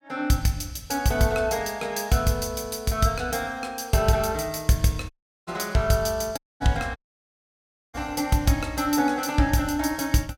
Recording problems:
dropout; at 5 s, at 6.5 s and at 7 s for 1 s

